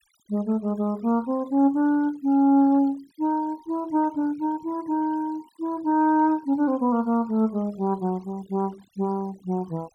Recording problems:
denoising artefacts; signal-to-artefact ratio 28 dB

